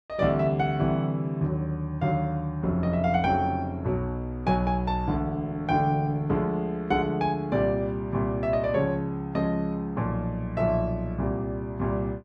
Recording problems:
none

